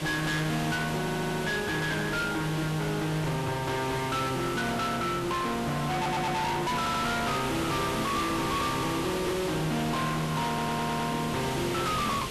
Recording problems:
distorted audio; hard clipping, signal-to-distortion ratio 6 dB
background hiss; SNR 7 dB
audio stuttering; 4 times, first at 1 s

